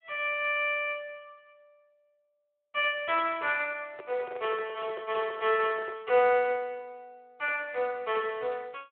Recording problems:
telephone audio; 340 Hz to 3.4 kHz, Speex
microphone handling noise; from 4 to 6 s; peak -9 dB vs average level

